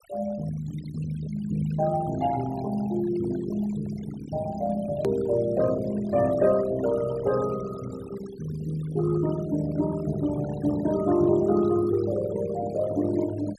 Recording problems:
noise reduction artefacts; signal-to-artefact ratio 17 dB
click at an edit; at 5 s

